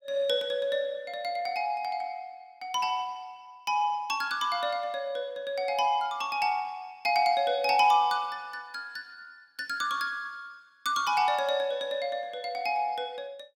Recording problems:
none

